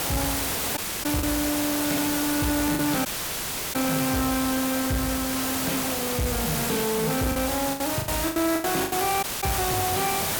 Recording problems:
distorted audio; soft clipping, signal-to-distortion ratio 10 dB
background hiss; slope -2 dB per octave, SNR 0 dB
packet loss; 6% of the sound replaced, filled with the last packet
audio cutting out; at 1 s, at 3 s for 0.5 s and at 9 s

